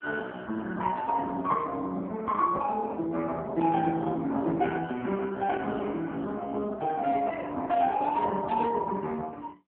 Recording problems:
telephone audio; 130 Hz to 3 kHz, AMR-NB

